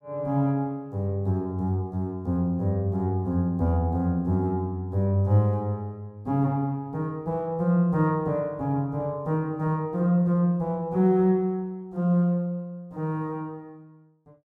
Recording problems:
none

